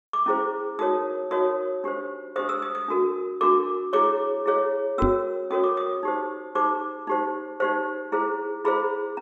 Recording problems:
microphone thump; at 5 s; peak +4 dB vs average level

